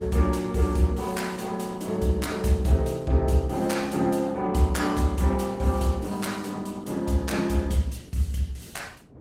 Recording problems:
lossy compression; Opus, log-spectral distance 4 dB, nothing above 16 kHz
wind on the microphone; below 350 Hz, SNR 21 dB

